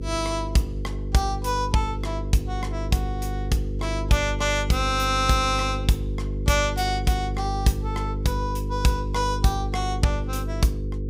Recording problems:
hum; 50 Hz, harmonics up to 500 Hz, SNR 4 dB

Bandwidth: 15.5 kHz